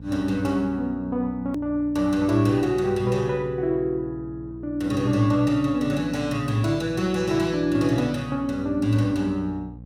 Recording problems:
hum; 60 Hz, harmonics up to 540 Hz, SNR 17 dB
hard cut with a click; at 1.5 s

